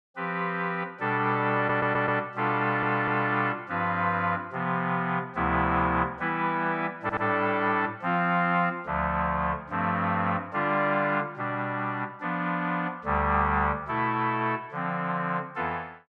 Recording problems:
audio stuttering; at 1.5 s, at 2.5 s and at 7 s

